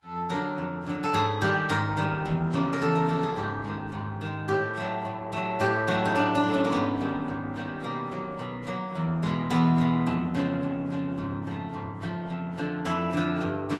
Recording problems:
codec artefacts; Opus, then Vorbis, log-spectral distance 3 dB, nothing above 13.5 kHz

